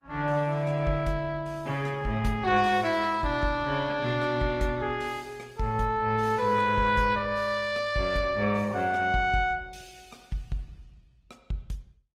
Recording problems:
codec artefacts; Opus, log-spectral distance 3 dB, nothing above 17.7 kHz

